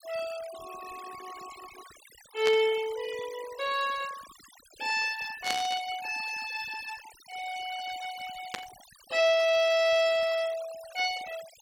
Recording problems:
denoising artefacts; signal-to-artefact ratio 17 dB
burst of static; at 2.5 s, at 5.5 s and at 8.5 s; peak +1 dB vs average level

